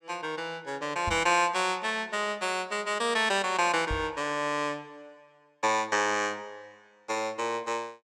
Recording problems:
microphone bump; at 1 s and at 4 s; peak -4 dB vs average level

